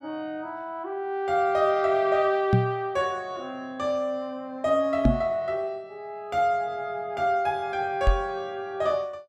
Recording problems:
microphone thump; at 2.5 s, at 5 s and at 8 s; peak +9 dB vs average level

